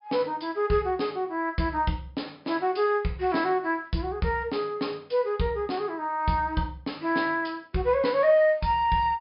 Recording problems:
treble cut off; nothing above 5.5 kHz

